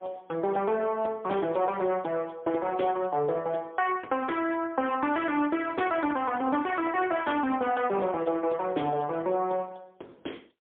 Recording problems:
telephone audio; 260 Hz to 3.4 kHz, AMR-NB, then MP3

